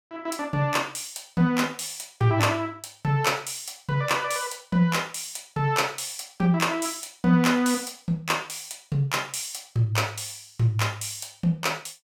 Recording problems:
none

